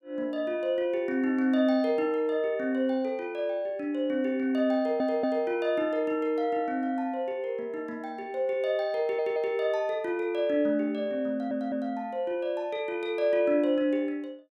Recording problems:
stutter; at 5 s, at 9 s and at 11 s

